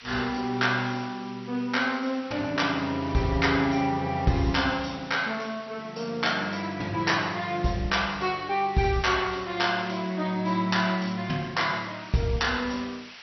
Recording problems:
lossy compression; MP2, log-spectral distance 12 dB, nothing above 5.8 kHz
background hiss; SNR 19 dB

